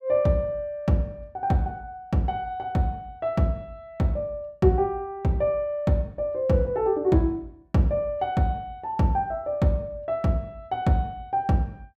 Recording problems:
none

